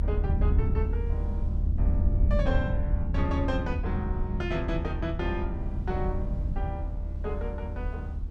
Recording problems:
low-frequency rumble; below 82 Hz, SNR -5 dB
wind on the microphone; below 100 Hz, SNR 12 dB

